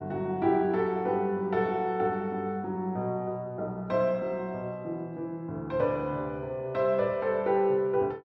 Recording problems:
none

